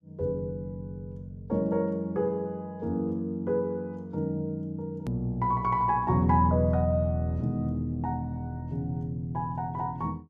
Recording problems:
hard cut with a click; at 5 s

